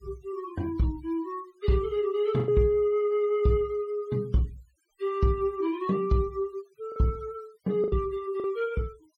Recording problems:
denoising artefacts; signal-to-artefact ratio 27 dB
lost packets; 3% of the sound replaced, filled with the last packet

